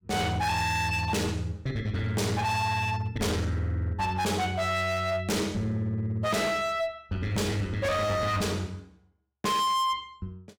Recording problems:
distorted audio; hard clipping, signal-to-distortion ratio 8 dB

